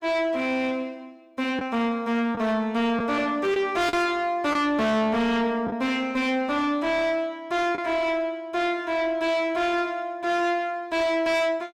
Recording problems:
distorted audio; soft clipping, signal-to-distortion ratio 6 dB
packet loss; 1.7% of the sound replaced, filled with the last packet

